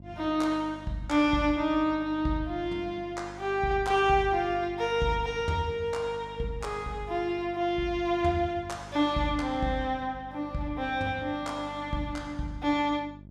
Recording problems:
hum; 50 Hz, harmonics up to 650 Hz, SNR 19 dB

